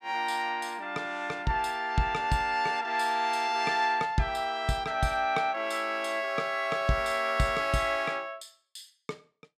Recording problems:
none

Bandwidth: 14 kHz